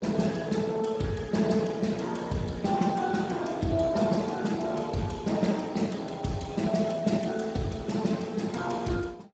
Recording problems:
lossy compression; Speex, log-spectral distance 4 dB, nothing above 7.6 kHz

